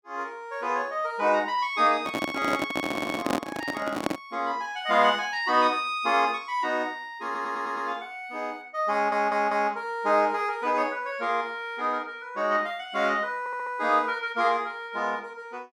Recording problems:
microphone handling noise; from 2 to 4 s; peak +4 dB vs average level
audio stuttering; 4 times, first at 3 s

